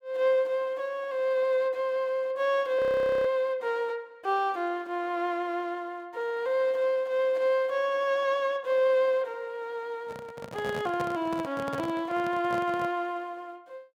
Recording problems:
audio freezing; at 3 s
handling noise; from 10 to 13 s; peak -4 dB vs average level

